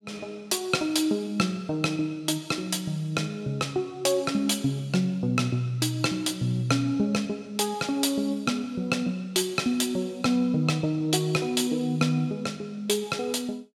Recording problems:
none

